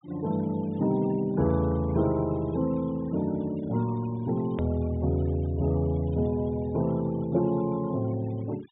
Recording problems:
treble cut off; nothing above 3.8 kHz
noise reduction artefacts; signal-to-artefact ratio 22 dB
edit click; at 4.5 s

